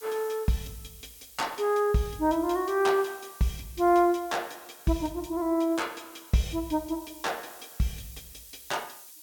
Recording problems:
hiss; slope +6 dB per octave, SNR 19 dB

